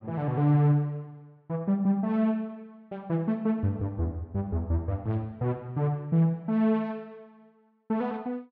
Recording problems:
none

